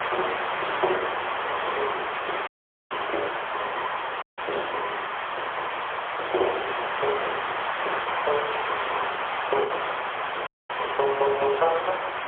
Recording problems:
phone line; 320 Hz to 3.6 kHz, AMR-NB, then MP3
hiss; SNR -1 dB
wind on the microphone; below 570 Hz, SNR 22 dB
packet loss; 1.8% of the sound replaced, filled with the last packet
dropout; at 2.5 s, at 4 s and at 10 s

